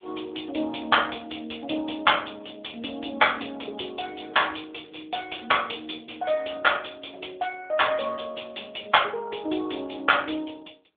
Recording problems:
phone line; 260 Hz to 3.6 kHz, AMR-NB

